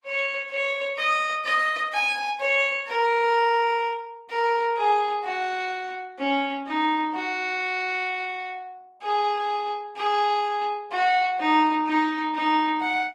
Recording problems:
lossy compression; Opus, log-spectral distance 3 dB

